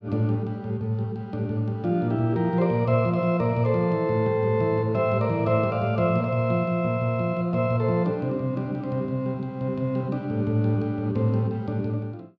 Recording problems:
none

